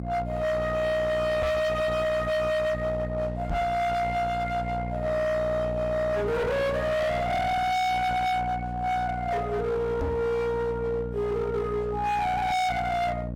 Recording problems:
distortion; hard clipping, signal-to-distortion ratio 7 dB
hum; 60 Hz, harmonics up to 600 Hz, SNR 8 dB
microphone bump; at 1.5 s, at 3.5 s and at 10 s; peak +1 dB vs average level

